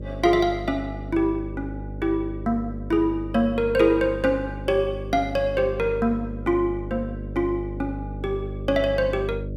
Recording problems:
hum; 50 Hz, harmonics up to 600 Hz, SNR 10 dB

